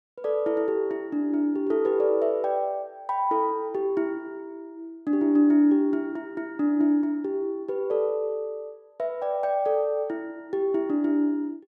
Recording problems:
none

